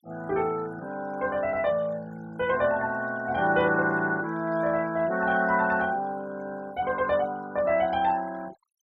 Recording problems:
noise reduction artefacts; signal-to-artefact ratio 21 dB

